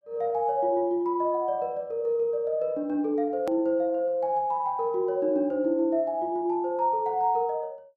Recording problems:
edit click; at 3.5 s

